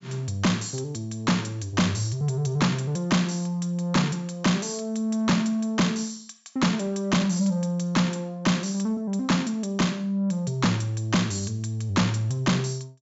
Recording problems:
low-pass filter; nothing above 8 kHz
distortion; soft clipping, signal-to-distortion ratio 7 dB

